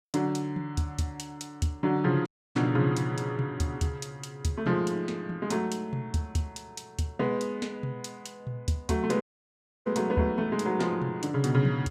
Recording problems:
audio cutting out; at 2.5 s and at 9 s for 0.5 s

